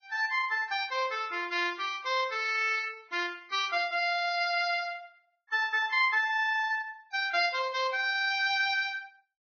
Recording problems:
codec artefacts; Vorbis, log-spectral distance 2 dB, nothing above 5.5 kHz

